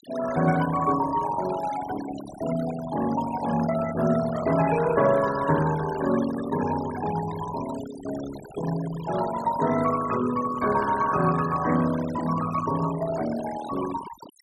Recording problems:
denoising artefacts; signal-to-artefact ratio 13 dB

